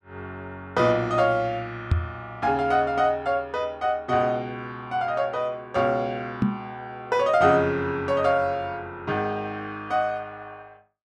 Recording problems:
microphone thump; at 2 s and at 6.5 s; peak +6 dB vs average level

